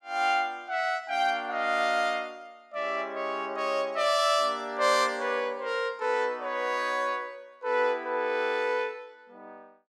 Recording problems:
none

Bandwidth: 14.5 kHz